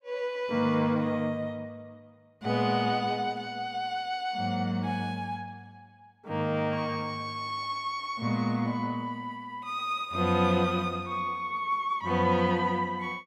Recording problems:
none

